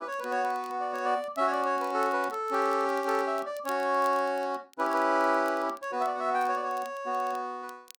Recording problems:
crackling; vinyl, SNR 25 dB

